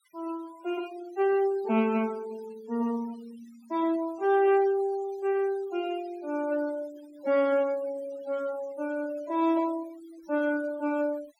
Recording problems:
denoising artefacts; signal-to-artefact ratio 22 dB

